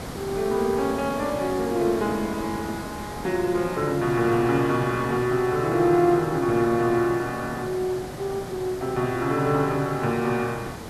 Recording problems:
background hiss; SNR 11 dB

